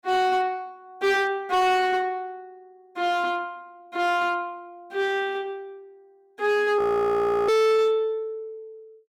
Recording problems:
distortion; hard clipping, signal-to-distortion ratio 10 dB
frozen audio; at 7 s for 0.5 s

